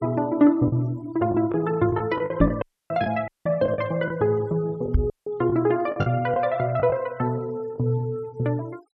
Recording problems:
noise reduction artefacts; signal-to-artefact ratio 27 dB
lost packets; 6% of the sound replaced, filled with the last packet
microphone thump; at 2.5 s and at 5 s; peak +9 dB vs average level
audio cutting out; at 2.5 s, at 3.5 s and at 5 s

